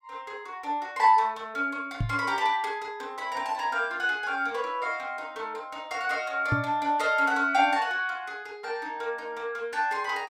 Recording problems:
microphone bump; at 2 s and at 6.5 s; peak +4 dB vs average level

